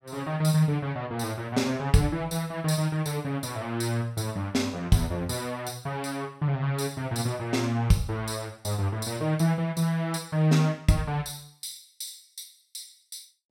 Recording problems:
none

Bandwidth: 16.5 kHz